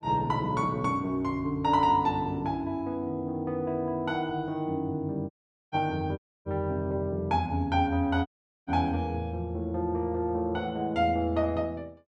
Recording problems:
audio cutting out; at 5.5 s, at 6 s and at 8.5 s

